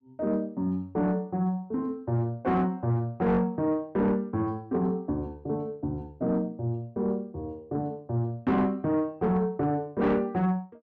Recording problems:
distortion; soft clipping, signal-to-distortion ratio 11 dB

